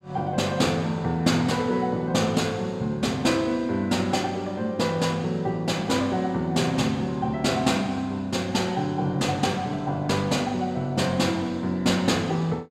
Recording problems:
none

